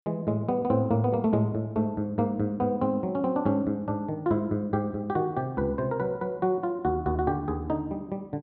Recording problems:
none

